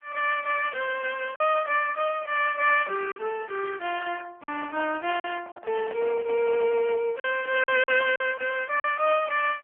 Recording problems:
phone line; 320 Hz to 2.9 kHz, AMR-NB
packet loss; 4% of the sound replaced, filled with silence
microphone handling noise; from 4.5 to 7 s; peak -9 dB vs average level

